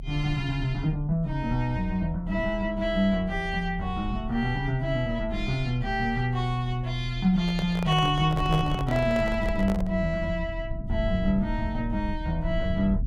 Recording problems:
rumble; below 74 Hz, strongest tone 36 Hz, SNR 9 dB
handling noise; from 7.5 to 10 s; peak -3 dB vs average level

